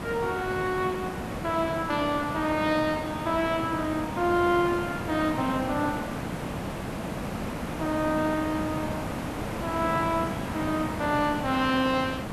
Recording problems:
background hiss; slope -7 dB per octave, SNR 6 dB

